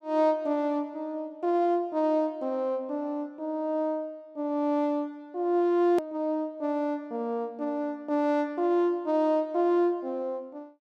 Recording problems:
hard cut with a click; at 6 s

